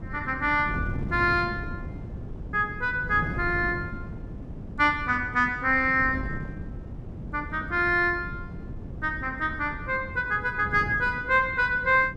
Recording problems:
wind on the microphone; below 220 Hz, SNR 12 dB

